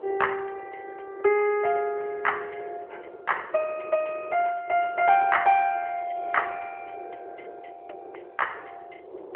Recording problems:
telephone audio; 320 Hz to 3.1 kHz, AMR-NB
wind on the microphone; below 570 Hz, SNR 19 dB

